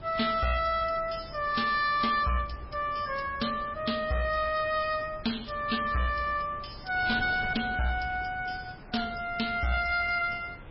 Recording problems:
lossy codec; MP3, log-spectral distance 5 dB, nothing above 5.3 kHz
distorted audio; hard clipping, signal-to-distortion ratio 12 dB
wind noise; below 570 Hz, SNR 17 dB

